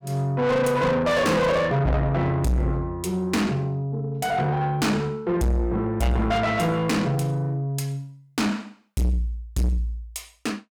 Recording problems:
distorted audio; soft clipping, signal-to-distortion ratio 6 dB

